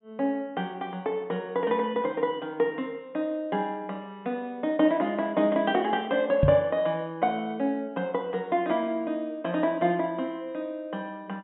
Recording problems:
low-pass filter; nothing above 3.8 kHz
knock on the microphone; at 6.5 s; peak +8 dB vs average level

